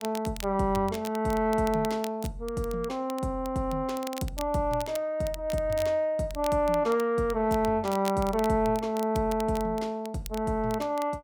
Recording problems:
crackle; vinyl, SNR 17 dB

